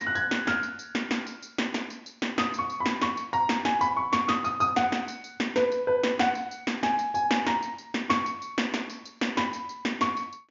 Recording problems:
treble cut off; nothing above 7.2 kHz

